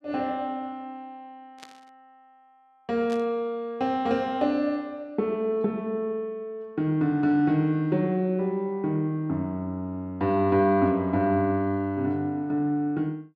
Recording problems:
burst of static; at 1.5 s and at 3 s; peak -13 dB vs average level

